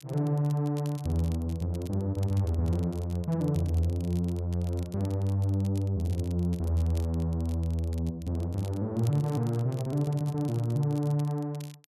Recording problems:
crackle; vinyl, SNR 23 dB

